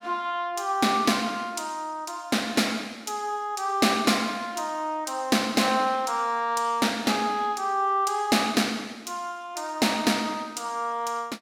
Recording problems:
none

